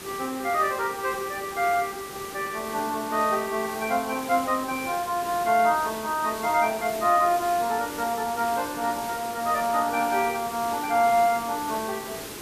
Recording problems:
hiss; SNR 11 dB

